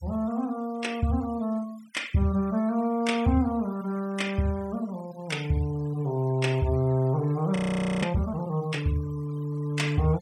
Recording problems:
noise reduction artefacts; signal-to-artefact ratio 20 dB
frozen audio; at 7.5 s

